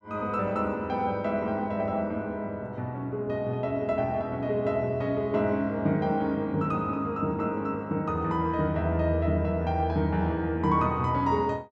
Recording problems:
none

